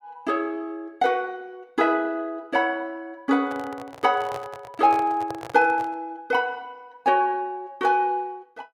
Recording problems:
microphone handling noise; from 3.5 to 6 s; peak -6 dB vs average level

